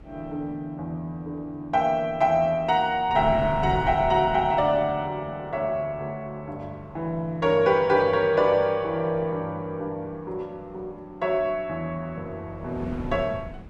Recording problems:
wind noise; below 260 Hz, SNR 15 dB

